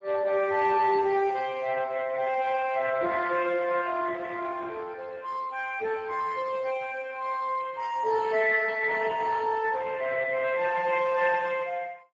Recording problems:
lossy codec; Speex, log-spectral distance 4 dB

